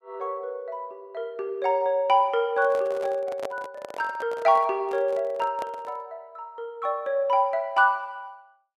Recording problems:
handling noise; from 2.5 to 6 s; peak -4 dB vs average level

